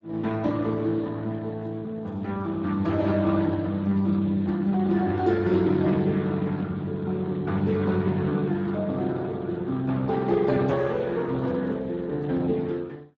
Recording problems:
codec artefacts; Speex, log-spectral distance 3 dB

